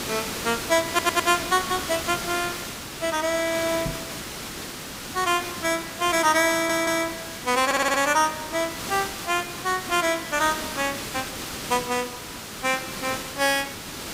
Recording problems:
hiss; slope -2 dB per octave, SNR 8 dB
audio stuttering; at 1 s, at 6.5 s and at 7.5 s
microphone thump; at 4 s; peak -3 dB vs average level

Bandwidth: 15.5 kHz